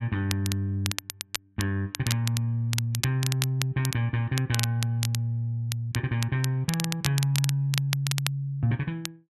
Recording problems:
crackle; vinyl, SNR 6 dB

